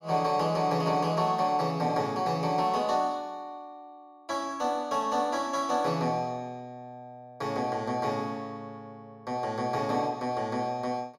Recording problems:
none

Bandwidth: 16 kHz